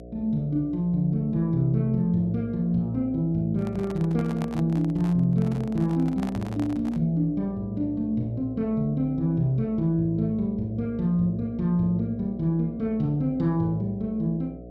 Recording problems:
electrical hum; 60 Hz, harmonics up to 720 Hz, SNR 17 dB
handling noise; from 3.5 to 7 s; peak -8 dB vs average level

